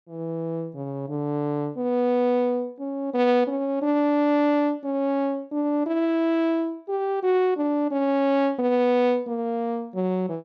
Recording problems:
none

